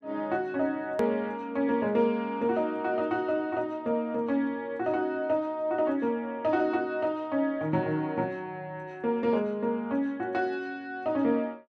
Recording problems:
click at an edit; at 1 s

